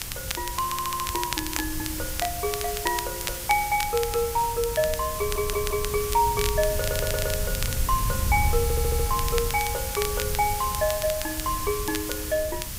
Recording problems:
mains hum; 60 Hz, harmonics up to 600 Hz, SNR 21 dB
hiss; slope +1 dB per octave, SNR 4 dB
wind noise; below 96 Hz, SNR 7 dB
crackle; vinyl, SNR 8 dB
audio stuttering; 4 times, first at 0.5 s

